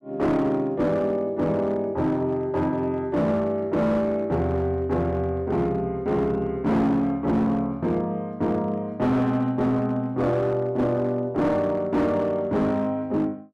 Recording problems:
distorted audio; hard clipping, signal-to-distortion ratio 11 dB

